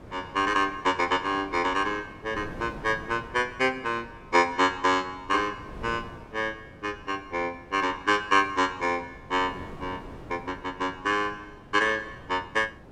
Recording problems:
wind noise; below 570 Hz, SNR 18 dB

